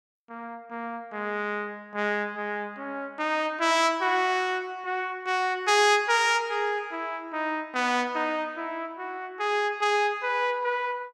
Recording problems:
none

